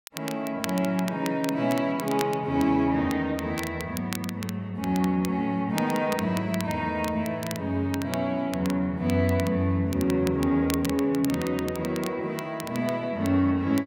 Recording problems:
crackle; vinyl, SNR 14 dB

